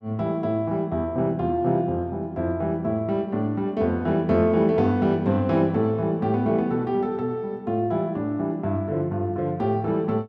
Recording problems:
none

